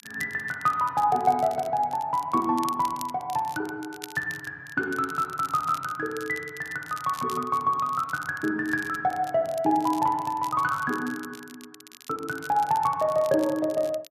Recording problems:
crackling; vinyl, SNR 19 dB

